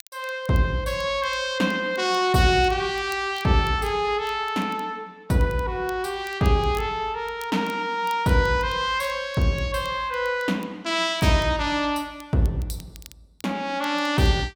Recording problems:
crackling; vinyl, SNR 26 dB

